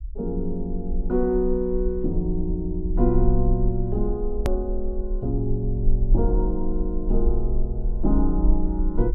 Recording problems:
rumble; below 46 Hz, strongest tone 22 Hz, SNR 2 dB
edit click; at 4.5 s

